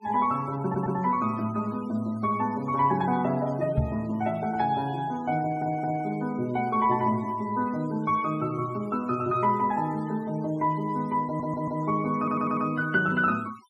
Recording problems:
noise reduction artefacts; signal-to-artefact ratio 24 dB
audio stuttering; 4 times, first at 0.5 s
microphone thump; at 4 s; peak +5 dB vs average level

